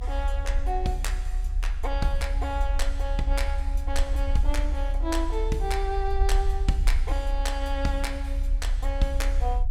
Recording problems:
rumble; below 56 Hz, strongest tone 36 Hz, SNR -3 dB

